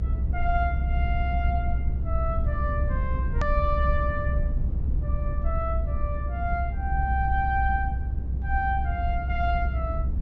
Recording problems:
low-pass filter; nothing above 8 kHz
rumble; below 70 Hz, strongest tone 64 Hz, SNR -3 dB
click at an edit; at 3.5 s

